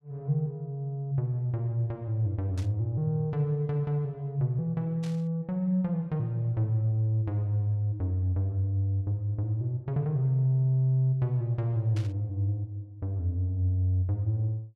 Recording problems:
static burst; at 2.5 s, at 5 s and at 12 s; peak -12 dB vs average level

